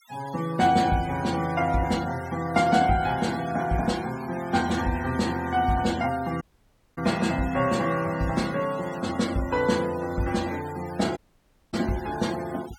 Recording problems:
noise reduction artefacts; signal-to-artefact ratio 17 dB
dropout; at 6.5 s for 0.5 s and at 11 s for 0.5 s

